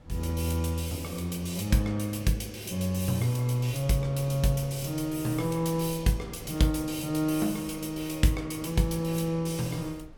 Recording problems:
wind noise; below 210 Hz, SNR 22 dB

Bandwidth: 17 kHz